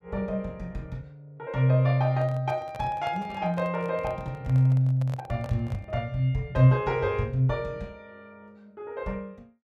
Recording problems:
handling noise; from 2 to 6 s; peak -10 dB vs average level

